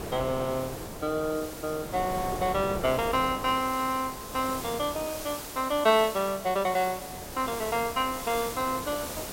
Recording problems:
background hiss; slope -2 dB per octave, SNR 11 dB
wind noise; below 720 Hz, SNR 12 dB

